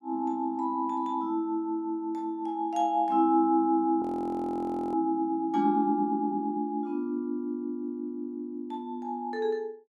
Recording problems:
frozen audio; at 4 s for 1 s

